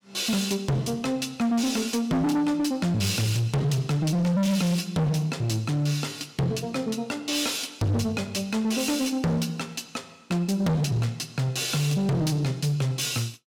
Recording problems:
distortion; hard clipping, signal-to-distortion ratio 6 dB

